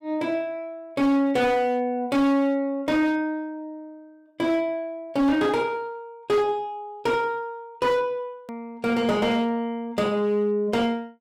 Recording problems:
distorted audio; hard clipping, signal-to-distortion ratio 11 dB
hard cut with a click; at 8.5 s

